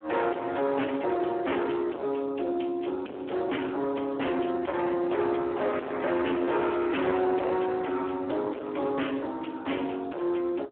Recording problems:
telephone audio; 240 Hz to 2.8 kHz, Speex
distortion; soft clipping, signal-to-distortion ratio 6 dB

